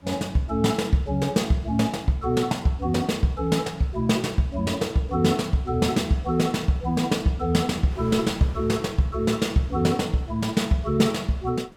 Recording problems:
wind on the microphone; below 1.1 kHz, SNR 25 dB

